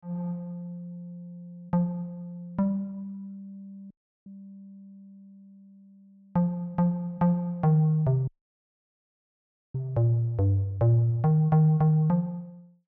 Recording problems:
audio cutting out; at 4 s and at 8.5 s for 1.5 s

